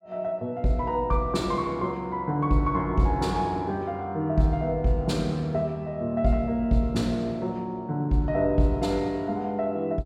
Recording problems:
none

